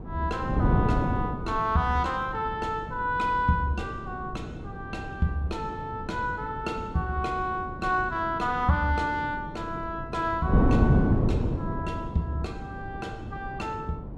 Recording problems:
wind on the microphone; below 270 Hz, SNR 2 dB

